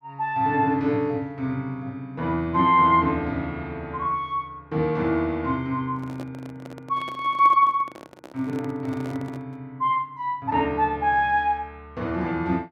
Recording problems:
handling noise; from 6 to 9.5 s; peak -10 dB vs average level

